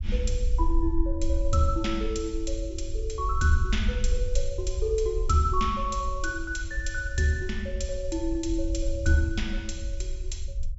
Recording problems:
treble cut off; nothing above 8 kHz
rumble; below 56 Hz, SNR 3 dB

